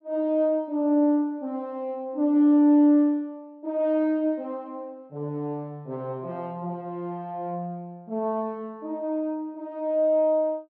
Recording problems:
none

